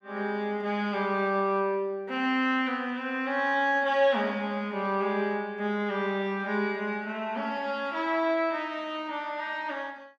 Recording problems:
none

